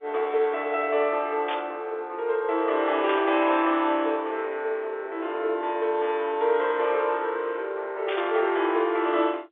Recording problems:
phone line; 300 Hz to 3.6 kHz, G.711
static burst; at 1.5 s, at 3 s and at 8 s; peak -4 dB vs average level

